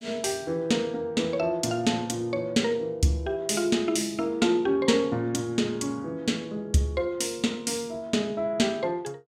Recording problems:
none

